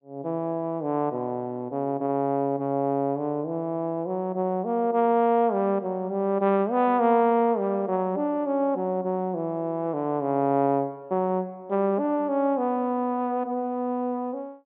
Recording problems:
treble missing; nothing above 4 kHz

